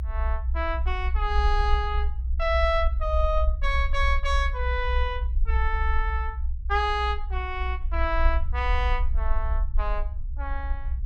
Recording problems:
low-frequency rumble; below 62 Hz, SNR 0 dB

